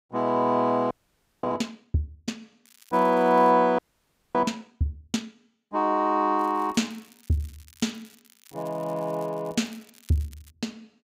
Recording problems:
audio freezing; at 1 s for 0.5 s and at 4 s for 0.5 s
crackling; at 2.5 s and from 6.5 to 11 s; loose cable, SNR 27 dB

